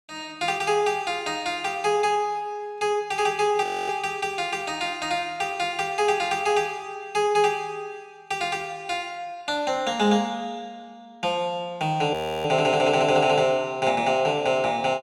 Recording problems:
audio freezing; at 3.5 s and at 12 s

